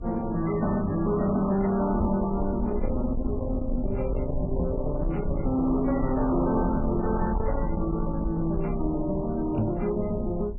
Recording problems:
lossy compression; MP3, then MP3, log-spectral distance 2 dB, nothing above 2.4 kHz
distorted audio; soft clipping, signal-to-distortion ratio 10 dB
low-frequency rumble; below 82 Hz, SNR 7 dB
microphone bump; at 2 s, at 4.5 s and at 9.5 s; peak +6 dB vs average level

